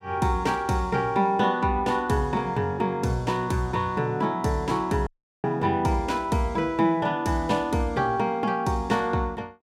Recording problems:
audio cutting out; at 5 s

